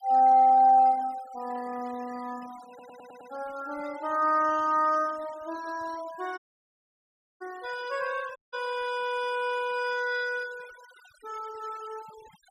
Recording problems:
noise reduction artefacts; signal-to-artefact ratio 24 dB
stutter; at 2.5 s
audio cutting out; at 6.5 s for 1 s and at 8.5 s

